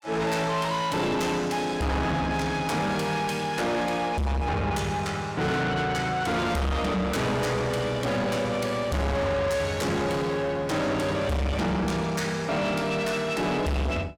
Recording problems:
distorted audio; soft clipping, signal-to-distortion ratio 6 dB

